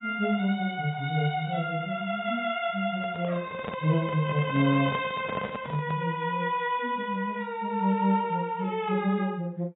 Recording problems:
lossy compression; AAC, log-spectral distance 2 dB, nothing above 3.7 kHz
microphone handling noise; from 3 to 6 s; peak -2 dB vs average level

